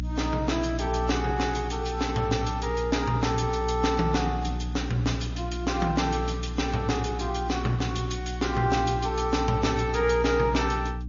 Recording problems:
treble cut off; nothing above 6.9 kHz
lossy compression; MP3, log-spectral distance 4 dB
electrical hum; 60 Hz, harmonics up to 300 Hz, SNR 6 dB

